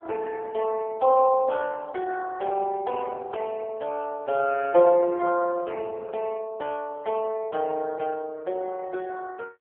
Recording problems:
telephone audio; 320 Hz to 2.6 kHz, AMR-NB

